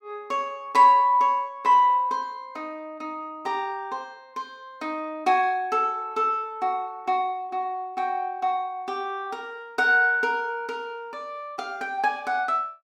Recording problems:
none

